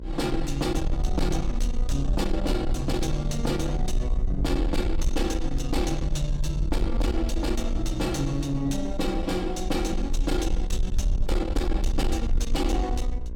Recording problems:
distorted audio; soft clipping, signal-to-distortion ratio 10 dB
hum; 60 Hz, harmonics up to 1.1 kHz, SNR 17 dB
rumble; below 52 Hz, SNR 2 dB

